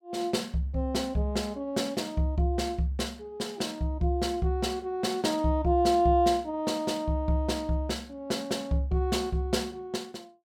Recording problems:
none

